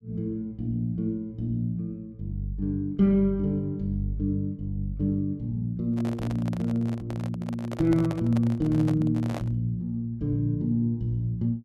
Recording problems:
microphone handling noise; from 6 to 9.5 s; peak -4 dB vs average level

